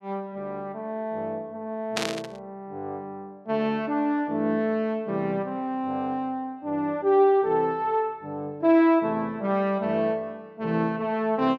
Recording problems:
static burst; at 2 s; peak +3 dB vs average level

